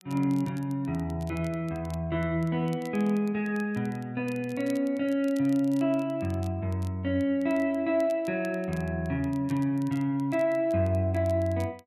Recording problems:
crackling; vinyl, SNR 26 dB

